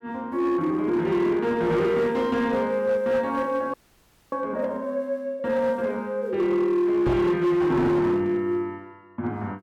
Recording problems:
distortion; hard clipping, signal-to-distortion ratio 11 dB
audio freezing; at 3.5 s for 0.5 s
microphone bump; at 7 s; peak +3 dB vs average level

